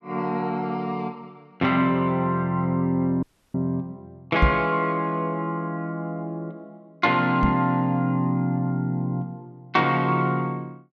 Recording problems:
dropout; at 3 s
microphone bump; at 4.5 s and at 7.5 s; peak +7 dB vs average level

